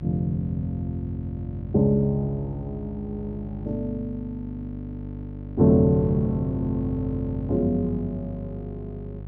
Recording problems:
electrical hum; 50 Hz, harmonics up to 700 Hz, SNR 10 dB

